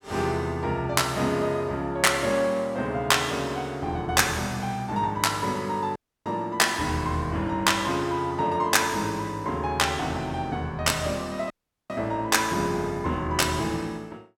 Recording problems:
audio cutting out; at 6 s and at 12 s

